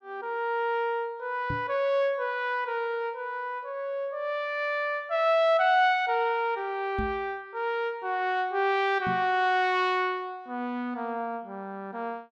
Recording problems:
knock on the microphone; at 1.5 s, at 7 s and at 9 s; peak -2 dB vs average level

